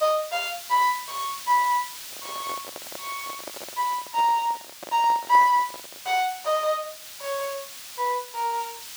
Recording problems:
background hiss; slope +3 dB per octave, SNR 12 dB
handling noise; from 2 to 6 s; peak -9 dB vs average level

